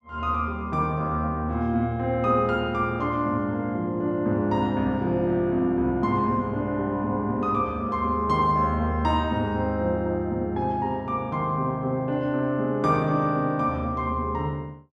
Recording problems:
none

